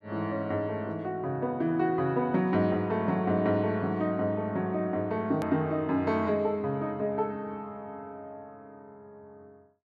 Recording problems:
edit click; at 5.5 s

